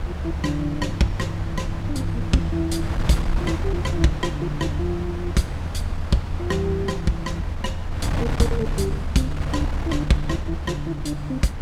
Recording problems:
wind on the microphone; below 150 Hz, SNR 4 dB

